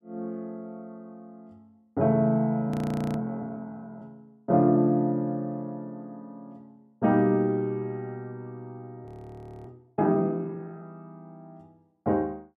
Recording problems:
audio freezing; at 2.5 s and at 9 s for 0.5 s

